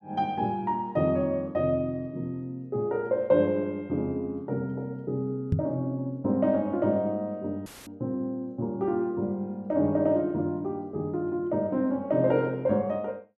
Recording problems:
knock on the microphone; at 5.5 s; peak +7 dB vs average level
audio cutting out; at 7.5 s; filled with static

